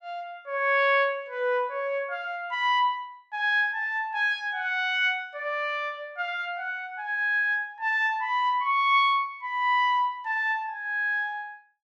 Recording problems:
none

